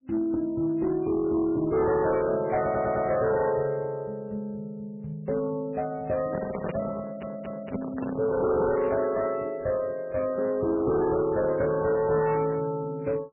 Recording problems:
codec artefacts; MP3, log-spectral distance 2 dB
distorted audio; hard clipping, uneven, signal-to-distortion ratio 11 dB
stutter; at 2.5 s and at 7 s
microphone handling noise; from 6 to 8.5 s; peak -2 dB vs average level

